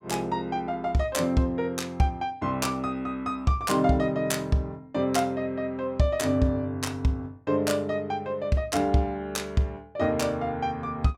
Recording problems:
none

